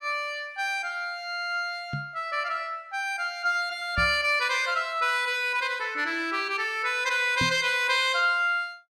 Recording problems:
knock on the microphone; at 2 s, at 4 s and at 7.5 s; peak -2 dB vs average level

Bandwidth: 15 kHz